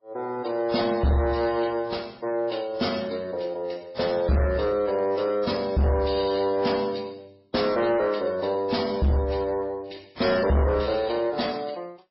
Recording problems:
codec artefacts; MP3, then AAC, log-spectral distance 4 dB, nothing above 5.3 kHz
distortion; soft clipping, signal-to-distortion ratio 8 dB

